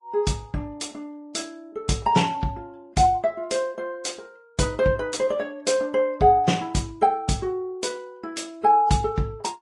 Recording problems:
lossy compression; AAC, then Vorbis, log-spectral distance 2 dB, nothing above 10.1 kHz

